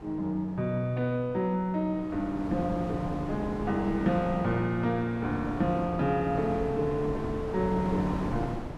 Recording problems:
wind on the microphone; below 570 Hz, SNR 7 dB

